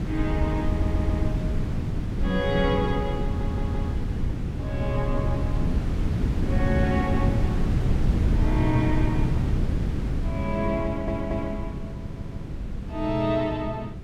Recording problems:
wind on the microphone; below 170 Hz, SNR -2 dB
audio stuttering; 4 times, first at 0.5 s

